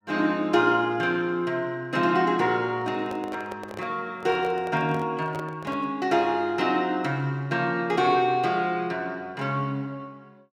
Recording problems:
microphone handling noise; from 2.5 to 6 s; peak -8 dB vs average level

